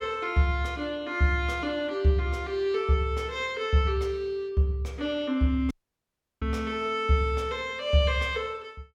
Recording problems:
dropout; at 5.5 s for 0.5 s

